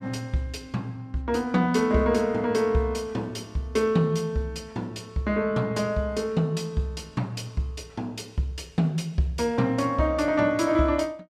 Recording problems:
none

